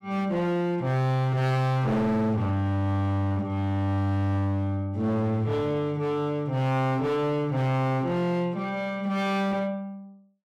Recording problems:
distortion; hard clipping, uneven, signal-to-distortion ratio 7 dB

